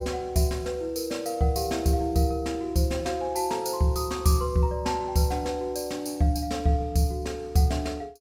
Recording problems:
none

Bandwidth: 16.5 kHz